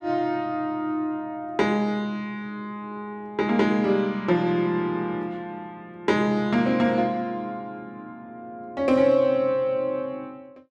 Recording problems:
none

